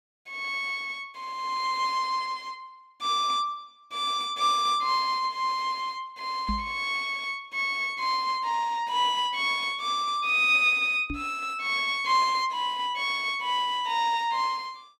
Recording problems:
microphone bump; at 6.5 s and at 11 s; peak -2 dB vs average level

